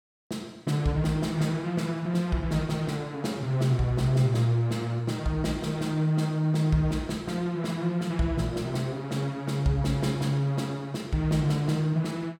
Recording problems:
none

